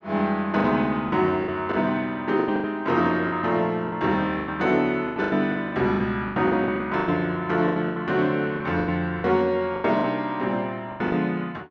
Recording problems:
lost packets; 14% of the sound replaced, filled with the last packet

